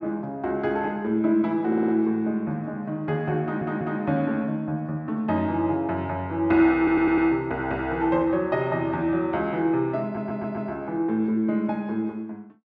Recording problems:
audio stuttering; 4 times, first at 1.5 s

